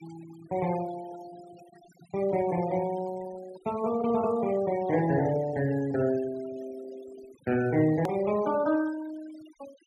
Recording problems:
noise reduction artefacts; signal-to-artefact ratio 19 dB
hard cut with a click; at 8 s

